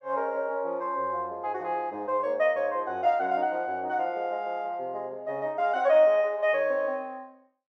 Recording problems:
none

